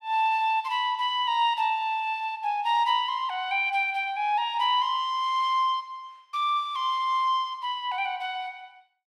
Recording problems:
none

